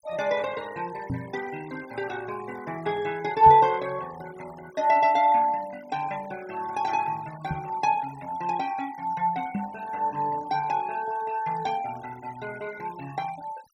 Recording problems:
noise reduction artefacts; signal-to-artefact ratio 20 dB
microphone thump; 4 times, first at 1 s; peak 0 dB vs average level

